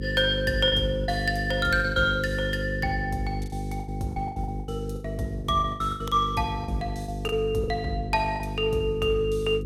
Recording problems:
hum; 50 Hz, harmonics up to 500 Hz, SNR 6 dB
packet loss; 11% of the sound replaced, filled with the last packet

